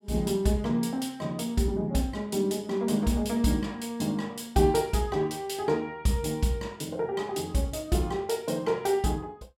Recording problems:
none

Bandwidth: 16.5 kHz